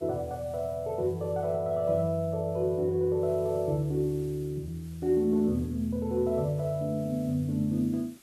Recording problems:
background hiss; SNR 27 dB

